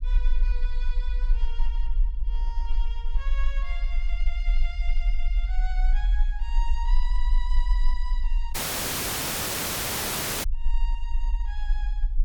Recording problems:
rumble; below 40 Hz, strongest tone 18 Hz, SNR -13 dB
dropout; at 8.5 s for 2 s

